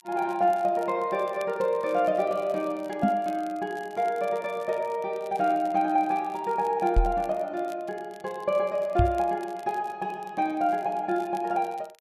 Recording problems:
crackle; vinyl, SNR 27 dB
microphone bump; at 3 s, at 7 s and at 9 s; peak +7 dB vs average level

